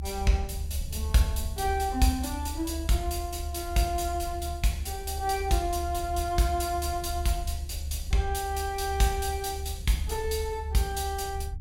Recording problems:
low-frequency rumble; below 74 Hz, strongest tone 72 Hz, SNR 6 dB

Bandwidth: 16.5 kHz